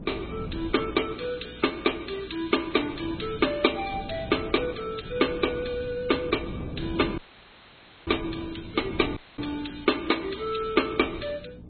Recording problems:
treble cut off; nothing above 4.1 kHz
lossy compression; MP3, log-spectral distance 7 dB
hum; 60 Hz, harmonics up to 300 Hz, SNR 20 dB
wind on the microphone; below 280 Hz, SNR 13 dB
dropout; at 7 s for 1 s and at 9 s

